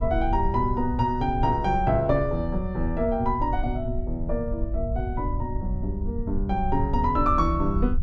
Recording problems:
rumble; below 76 Hz, SNR 5 dB

